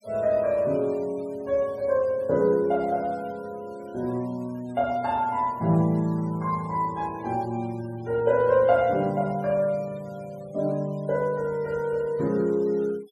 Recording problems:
noise reduction artefacts; signal-to-artefact ratio 26 dB

